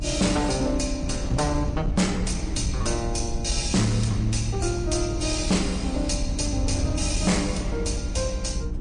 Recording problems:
lossy compression; MP3, log-spectral distance 5 dB, nothing above 9 kHz
distortion; hard clipping, uneven, signal-to-distortion ratio 11 dB
hum; 60 Hz, harmonics up to 360 Hz, SNR 13 dB
rumble; below 72 Hz, SNR 6 dB
wind on the microphone; below 380 Hz, SNR 15 dB

